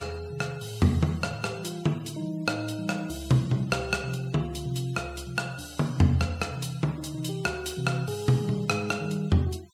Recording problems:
noise reduction artefacts; signal-to-artefact ratio 23 dB

